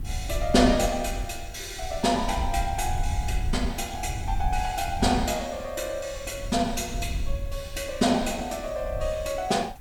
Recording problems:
hiss; SNR 27 dB
wind on the microphone; below 76 Hz, SNR 7 dB

